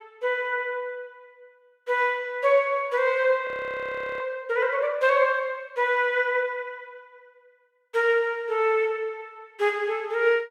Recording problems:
audio freezing; at 3.5 s for 0.5 s

